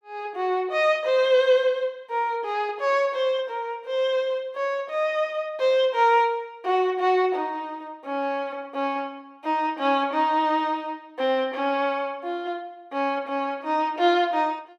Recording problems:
none

